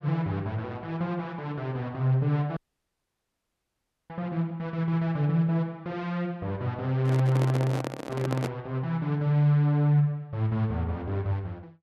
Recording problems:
dropout; at 2.5 s for 1.5 s
microphone handling noise; from 7 to 8.5 s; peak 0 dB vs average level

